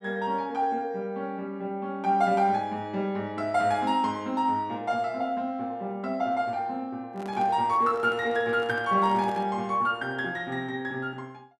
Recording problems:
microphone handling noise; from 7 to 9.5 s; peak -7 dB vs average level

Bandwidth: 12.5 kHz